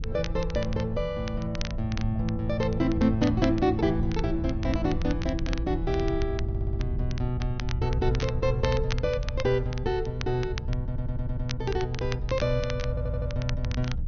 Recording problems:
treble missing; nothing above 6.5 kHz
wind on the microphone; below 88 Hz, SNR 5 dB
crackle; vinyl, SNR 14 dB
stutter; at 6.5 s, at 11 s and at 13 s

